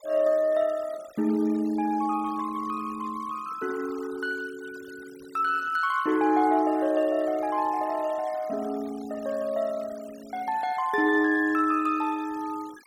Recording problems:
noise reduction artefacts; signal-to-artefact ratio 23 dB

